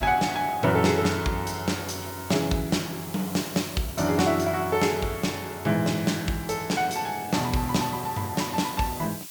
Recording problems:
hiss; slope +3 dB per octave, SNR 14 dB

